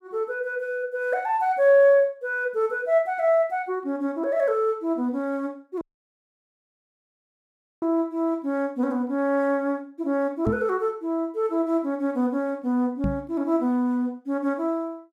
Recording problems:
audio cutting out; at 6 s for 2 s
microphone bump; at 10 s and at 13 s; peak +2 dB vs average level

